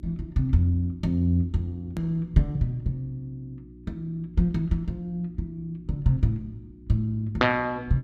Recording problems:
electrical hum; 60 Hz, harmonics up to 360 Hz, SNR 21 dB
edit click; at 2 s

